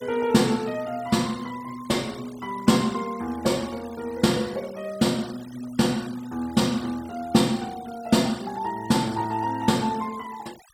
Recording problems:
denoising artefacts; signal-to-artefact ratio 20 dB

